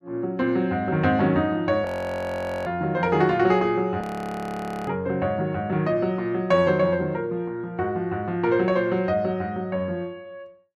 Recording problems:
audio freezing; at 2 s for 1 s and at 4 s for 1 s

